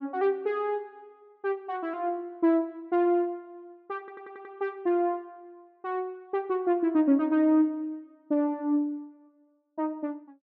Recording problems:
audio stuttering; at 4 s

